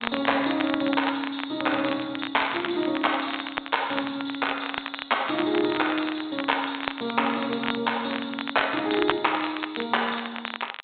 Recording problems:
treble missing; nothing above 4 kHz
crackle; vinyl, SNR 7 dB

